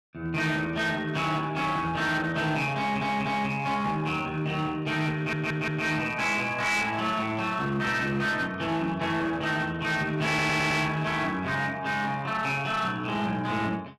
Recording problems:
distorted audio; hard clipping, uneven, signal-to-distortion ratio 11 dB
audio stuttering; at 3 s, at 5 s and at 10 s

